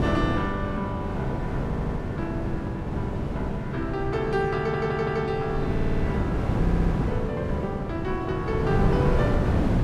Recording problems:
wind on the microphone; below 310 Hz, SNR -2 dB
audio stuttering; 4 times, first at 1.5 s

